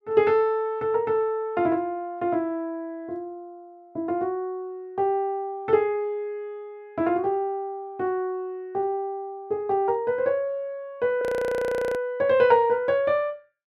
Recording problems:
frozen audio; at 11 s for 0.5 s

